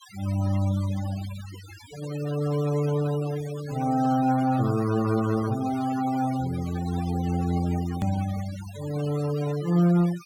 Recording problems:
noise reduction artefacts; signal-to-artefact ratio 16 dB
edit click; at 8 s

